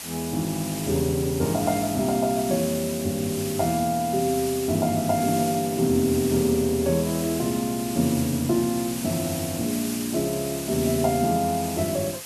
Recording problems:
background hiss; slope +1 dB per octave, SNR 9 dB

